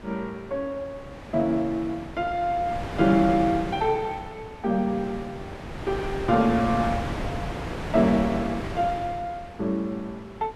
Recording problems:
wind on the microphone; below 890 Hz, SNR 9 dB

